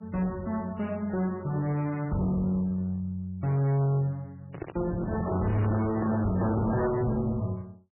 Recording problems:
lossy codec; MP3, log-spectral distance 2 dB, nothing above 11.3 kHz
distortion; hard clipping, uneven, signal-to-distortion ratio 7 dB
handling noise; from 4.5 to 6.5 s; peak 0 dB vs average level

